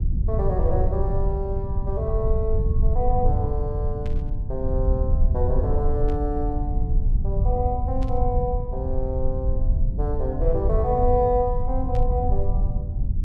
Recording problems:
rumble; below 76 Hz, SNR -2 dB
burst of static; 4 times, first at 4 s; peak -13 dB vs average level

